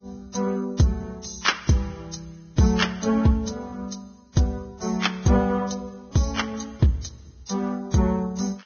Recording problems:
lossy compression; Vorbis, log-spectral distance 4 dB, nothing above 6.5 kHz

